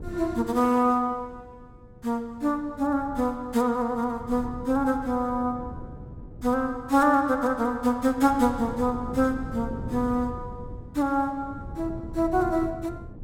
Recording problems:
wind noise; below 220 Hz, SNR 15 dB

